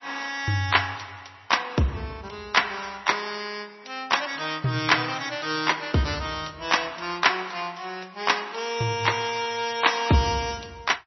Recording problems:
lossy compression; MP3, log-spectral distance 9 dB, nothing above 5.8 kHz

